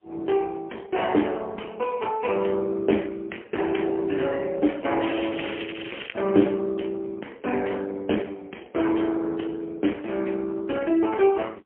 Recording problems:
telephone audio; 220 Hz to 3.3 kHz, AMR-NB, then MP3
crackling; from 5 to 6 s; loose cable, SNR 10 dB

